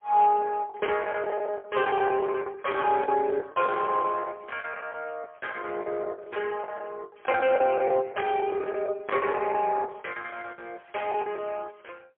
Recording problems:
telephone audio; 340 Hz to 3.3 kHz, AMR-NB, then MP3
lost packets; 17% of the sound replaced, filled with the last packet

